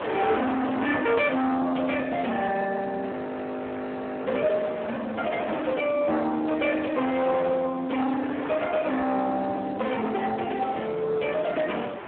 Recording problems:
phone line; 320 Hz to 2.9 kHz, Speex
distorted audio; hard clipping, uneven, signal-to-distortion ratio 8 dB
wind on the microphone; below 1.5 kHz, SNR 12 dB
frozen audio; at 3 s for 1 s

